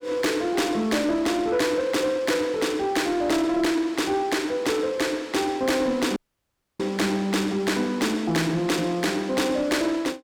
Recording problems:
distorted audio; soft clipping, signal-to-distortion ratio 12 dB
audio cutting out; at 6 s for 0.5 s

